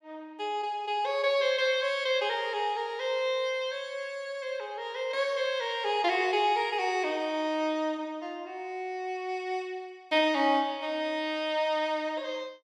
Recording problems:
none

